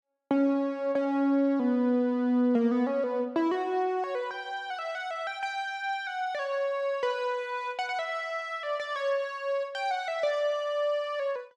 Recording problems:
none

